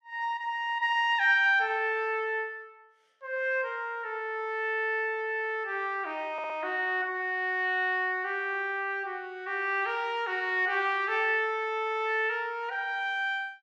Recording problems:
audio stuttering; at 6.5 s

